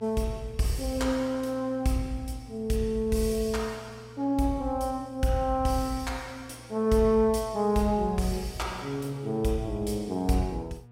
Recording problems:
hum; 60 Hz, harmonics up to 1.2 kHz, SNR 21 dB

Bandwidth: 16 kHz